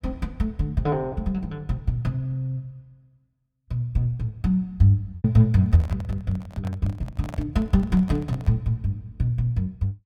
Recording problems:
lost packets; 0.9% of the sound replaced, filled with repeated pitch periods
handling noise; from 5.5 to 8.5 s; peak -8 dB vs average level

